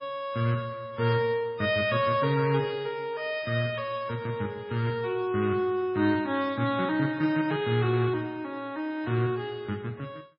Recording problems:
codec artefacts; MP3, log-spectral distance 2 dB, nothing above 4.4 kHz

